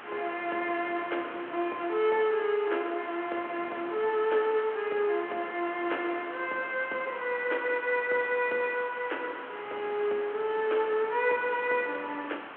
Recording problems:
telephone audio; 300 Hz to 3.4 kHz, G.726
background hiss; SNR 14 dB
wind on the microphone; below 790 Hz, SNR 21 dB

